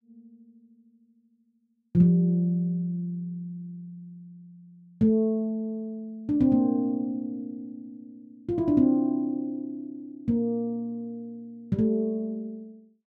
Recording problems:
none

